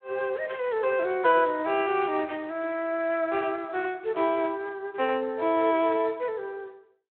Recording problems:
phone line; 280 Hz to 3.6 kHz, Speex

